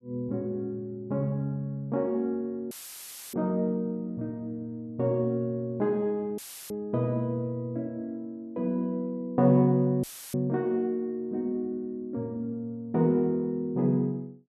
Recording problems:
dropout; at 2.5 s for 0.5 s, at 6.5 s and at 10 s; filled with static

